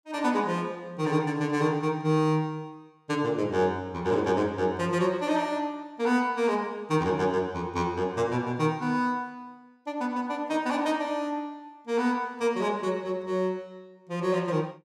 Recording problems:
none

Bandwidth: 16 kHz